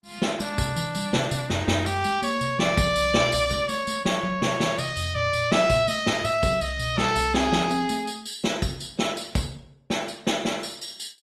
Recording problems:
codec artefacts; Opus, log-spectral distance 4 dB, nothing above 14.3 kHz

